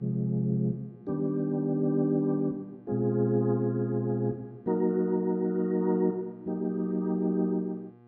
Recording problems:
electrical hum; 60 Hz, harmonics up to 1.6 kHz, SNR 27 dB

